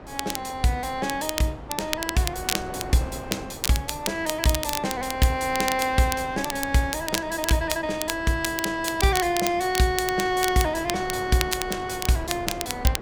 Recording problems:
wind noise; below 810 Hz, SNR 14 dB
crackle; vinyl, SNR 6 dB

